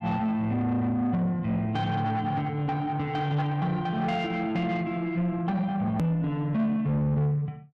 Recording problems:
distortion; soft clipping, signal-to-distortion ratio 10 dB
hard cut with a click; at 6 s

